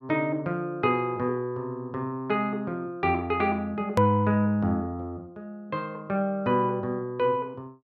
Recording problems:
hard cut with a click; at 4 s

